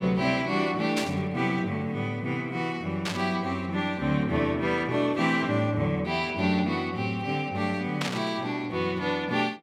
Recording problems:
burst of static; at 1 s, at 3 s and at 8 s; peak 0 dB vs average level

